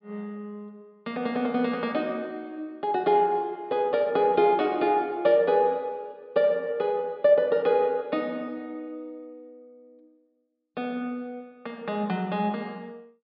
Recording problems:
low-pass filter; nothing above 5.5 kHz

